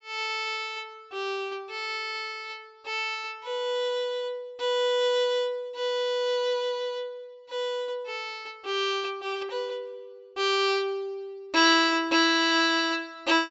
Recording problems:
treble missing; nothing above 8 kHz

